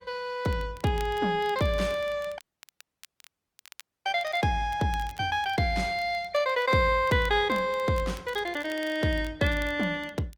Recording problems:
lossy codec; Opus, log-spectral distance 2 dB, nothing above 18.9 kHz
crackling; vinyl, SNR 24 dB
dropout; at 2.5 s for 1.5 s

